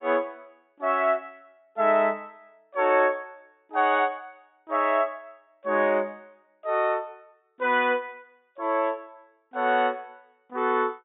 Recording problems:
treble missing; nothing above 4 kHz

